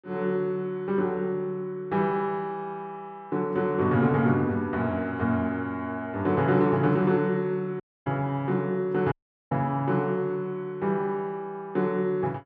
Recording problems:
dropout; at 8 s and at 9 s

